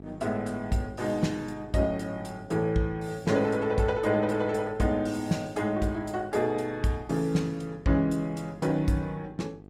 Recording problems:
lossy compression; Opus, log-spectral distance 2 dB, nothing above 17.7 kHz
hum; 50 Hz, harmonics up to 1.3 kHz, SNR 20 dB

